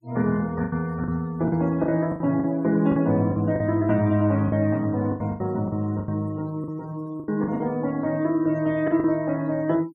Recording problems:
noise reduction artefacts; signal-to-artefact ratio 26 dB
lost packets; 11% of the sound replaced, filled with the last packet

